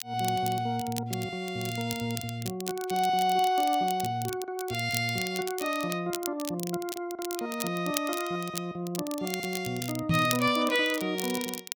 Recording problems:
crackle; vinyl, SNR 9 dB
microphone thump; at 10 s; peak +6 dB vs average level

